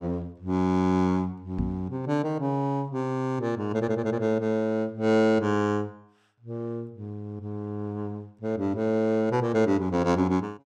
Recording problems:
knock on the microphone; at 1.5 s; peak 0 dB vs average level

